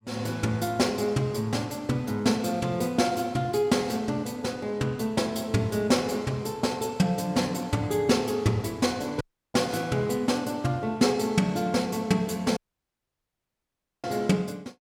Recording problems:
audio cutting out; at 9 s and at 13 s for 1.5 s

